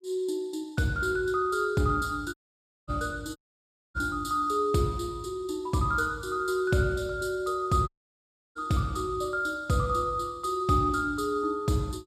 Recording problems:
dropout; at 2.5 s for 0.5 s, at 3.5 s for 0.5 s and at 8 s for 0.5 s

